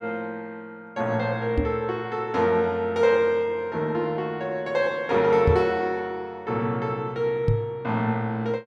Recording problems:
microphone bump; at 1.5 s, at 5.5 s and at 7.5 s; peak +6 dB vs average level

